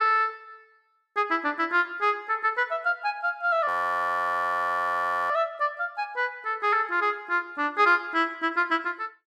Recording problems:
audio freezing; at 3.5 s for 1.5 s

